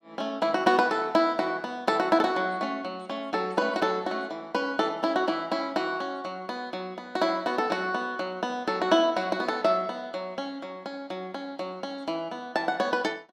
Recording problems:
none

